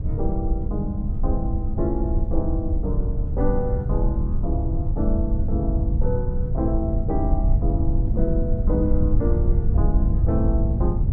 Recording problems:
rumble; below 86 Hz, SNR -4 dB

